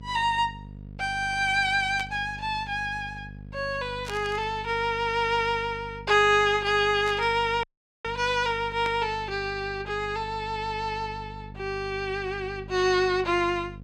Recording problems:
hum; 50 Hz, harmonics up to 500 Hz, SNR 16 dB
static burst; 4 times, first at 2 s; peak -7 dB vs average level
audio cutting out; at 7.5 s

